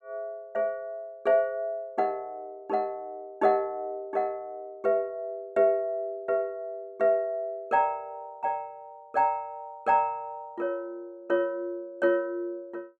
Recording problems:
none

